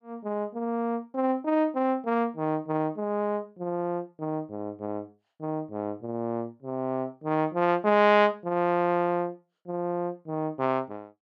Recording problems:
none

